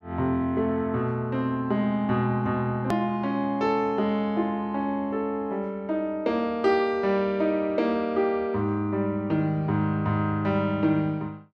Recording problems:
edit click; at 3 s

